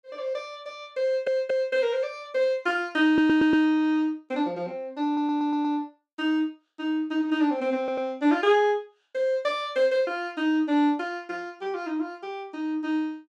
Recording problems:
stutter; 4 times, first at 1 s

